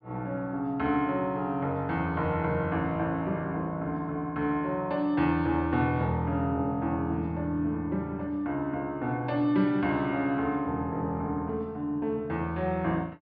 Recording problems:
treble missing; nothing above 5.5 kHz

